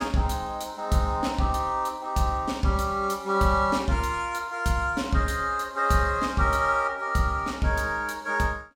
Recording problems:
none

